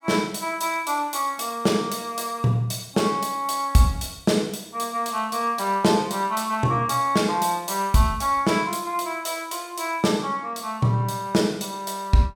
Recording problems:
none

